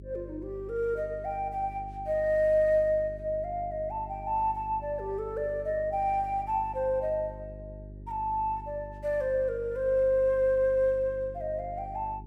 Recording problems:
electrical hum; 50 Hz, harmonics up to 400 Hz, SNR 16 dB

